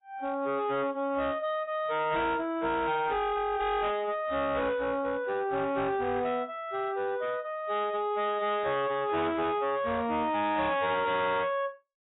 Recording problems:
lossy codec; AAC, log-spectral distance 2 dB, nothing above 3.8 kHz
distorted audio; hard clipping, signal-to-distortion ratio 10 dB

